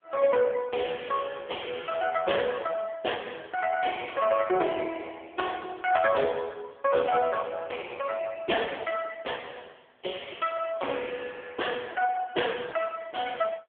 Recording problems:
telephone audio; 300 Hz to 3.3 kHz, AMR-NB

